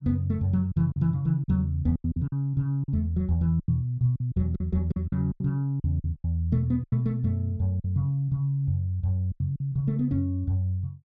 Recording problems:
lost packets; 10% of the sound replaced, filled with silence

